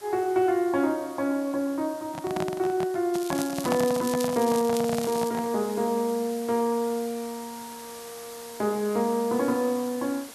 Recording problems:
background hiss; slope -1 dB per octave, SNR 17 dB
handling noise; from 2 to 5.5 s; peak +2 dB vs average level
crackling; from 3 to 5.5 s; loose cable, SNR 12 dB

